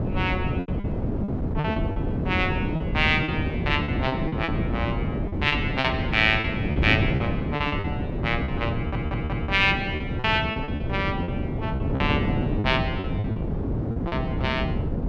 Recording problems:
wind noise; below 300 Hz, SNR 1 dB
packet loss; 11% of the sound replaced, filled with repeated pitch periods
audio stuttering; at 9 s

